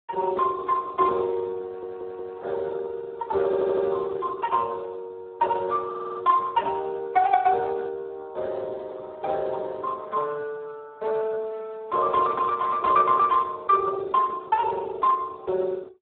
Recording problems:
phone line; 320 Hz to 2 kHz, Speex
stutter; at 1.5 s, at 3.5 s and at 6 s

